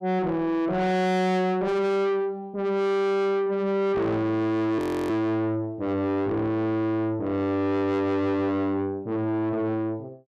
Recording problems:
distorted audio; soft clipping, signal-to-distortion ratio 7 dB
audio freezing; at 5 s

